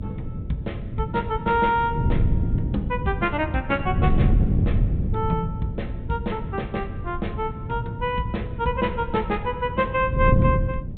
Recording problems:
treble missing; nothing above 4 kHz
hum; 50 Hz, harmonics up to 600 Hz, SNR 20 dB
wind on the microphone; below 160 Hz, SNR 1 dB

